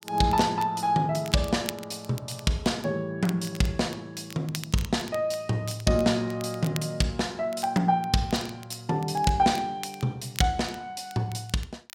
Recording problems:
crackling; vinyl, SNR 17 dB

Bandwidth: 16 kHz